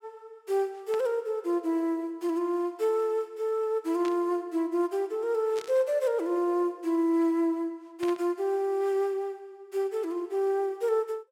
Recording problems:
burst of static; 4 times, first at 1 s; peak -9 dB vs average level

